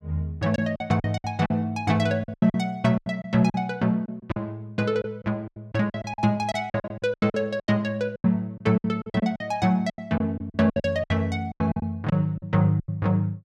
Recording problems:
lost packets; 16% of the sound replaced, filled with silence

